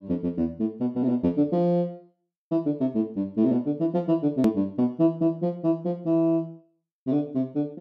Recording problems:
hard cut with a click; at 4.5 s

